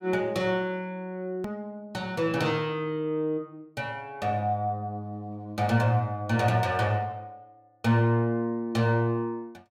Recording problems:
click at an edit; at 1.5 s

